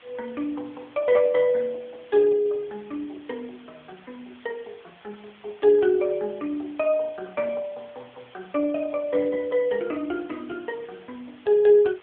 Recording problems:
telephone audio; 260 Hz to 3.1 kHz, AMR-NB
hiss; SNR 27 dB

